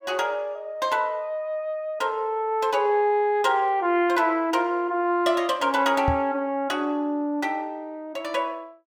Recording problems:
microphone bump; at 6 s; peak +2 dB vs average level

